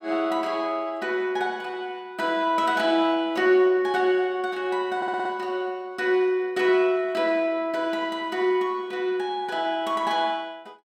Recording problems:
stutter; at 5 s

